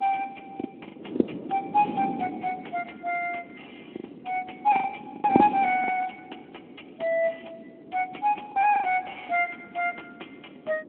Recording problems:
phone line; 260 Hz to 3.2 kHz, Speex
wind noise; below 400 Hz, SNR 9 dB
packet loss; 6% of the sound replaced, filled with the last packet

